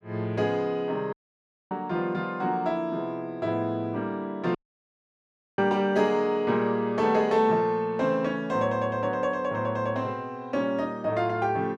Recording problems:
dropout; at 1 s for 0.5 s and at 4.5 s for 1 s

